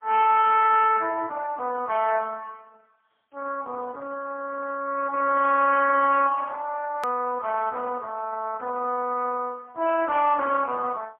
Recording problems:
phone line; 450 Hz to 2.8 kHz, AMR-NB, then MP3
distorted audio; soft clipping, signal-to-distortion ratio 12 dB
click at an edit; at 7 s

